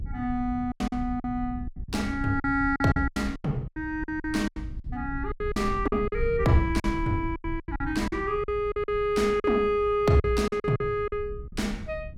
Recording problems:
rumble; below 94 Hz, SNR 11 dB
lost packets; 14% of the sound replaced, filled with silence

